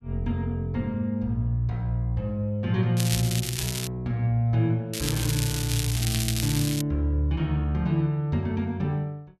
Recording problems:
crackle; at 3 s and from 5 to 7 s; loose cable, SNR 4 dB

